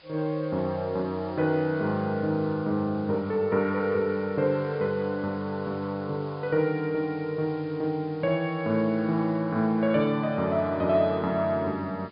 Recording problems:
low-pass filter; nothing above 5 kHz
hiss; SNR 27 dB

